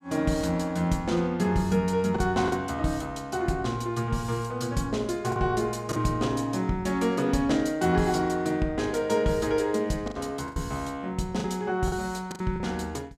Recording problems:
packet loss; 4% of the sound replaced, filled with the last packet

